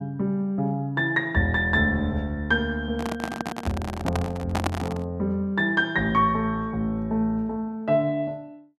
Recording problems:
microphone handling noise; from 3 to 5 s; peak +3 dB vs average level

